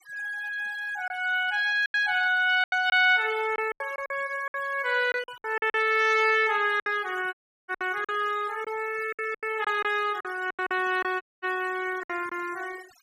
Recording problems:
noise reduction artefacts; signal-to-artefact ratio 20 dB
packet loss; 10% of the sound replaced, filled with silence
dropout; at 7.5 s and at 11 s

